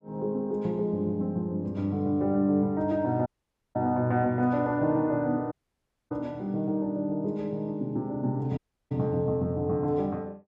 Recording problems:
audio cutting out; at 3.5 s, at 5.5 s for 0.5 s and at 8.5 s

